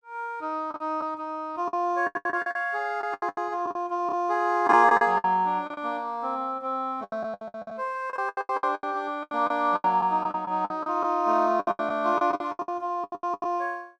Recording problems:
lost packets; 18% of the sound replaced, filled with the last packet

